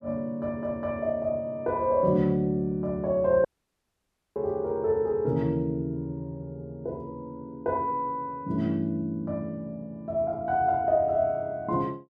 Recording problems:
audio cutting out; at 3.5 s for 1 s

